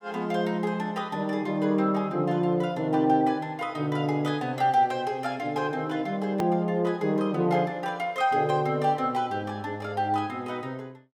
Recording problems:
edit click; at 6.5 s

